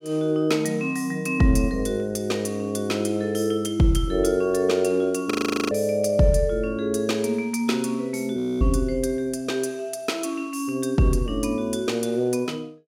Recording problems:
frozen audio; at 5.5 s and at 8.5 s

